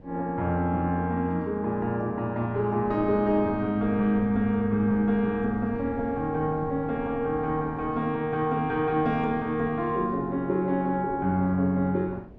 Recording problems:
wind noise; below 330 Hz, SNR 18 dB

